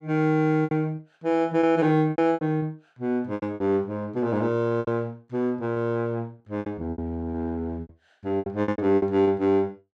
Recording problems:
lost packets; 13% of the sound replaced, filled with repeated pitch periods

